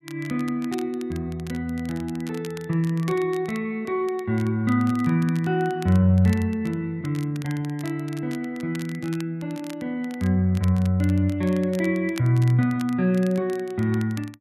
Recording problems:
crackling; vinyl, SNR 21 dB

